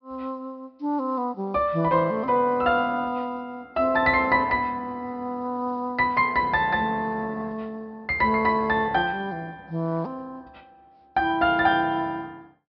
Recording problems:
treble cut off; nothing above 5.5 kHz

